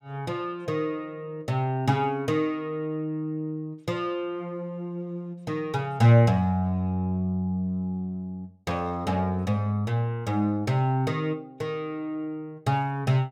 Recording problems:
none

